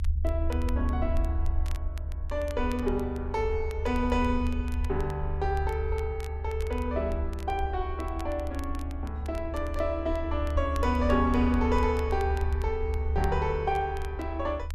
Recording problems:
rumble; below 74 Hz, strongest tone 72 Hz, SNR 2 dB
crackle; vinyl, SNR 22 dB

